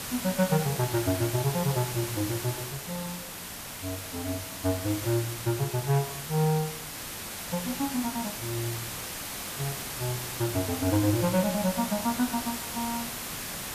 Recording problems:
hiss; slope -1 dB per octave, SNR 5 dB

